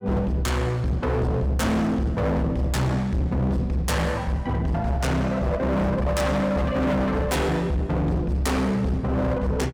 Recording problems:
distortion; hard clipping, uneven, signal-to-distortion ratio 6 dB

